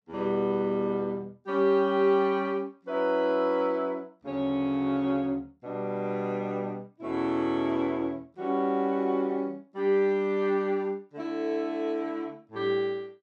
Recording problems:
none

